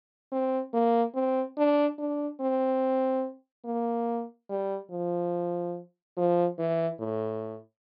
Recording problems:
low-pass filter; nothing above 5.5 kHz

